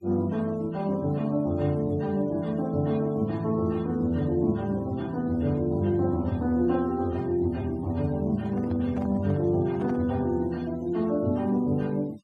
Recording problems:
denoising artefacts; signal-to-artefact ratio 27 dB
handling noise; from 8.5 to 10 s; peak -11 dB vs average level

